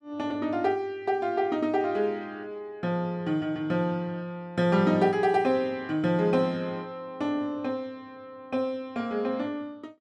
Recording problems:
none

